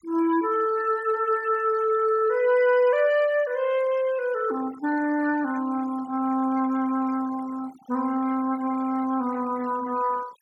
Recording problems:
noise reduction artefacts; signal-to-artefact ratio 20 dB

